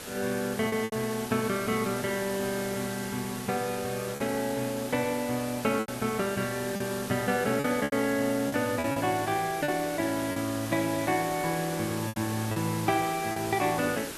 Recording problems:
background hiss; SNR 9 dB
packet loss; 5% of the sound replaced, filled with repeated pitch periods

